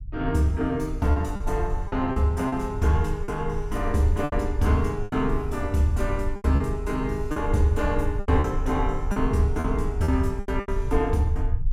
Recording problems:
rumble; below 72 Hz, SNR 6 dB
packet loss; 8% of the sound replaced, filled with repeated pitch periods

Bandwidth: 16.5 kHz